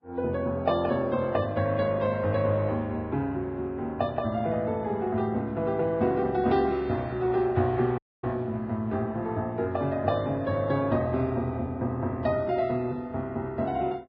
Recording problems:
lossy codec; Vorbis, log-spectral distance 2 dB
dropout; at 8 s

